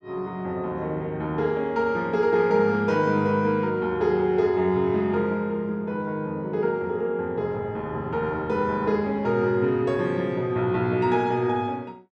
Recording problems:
none

